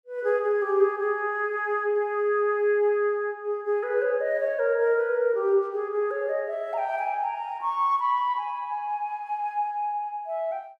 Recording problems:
none

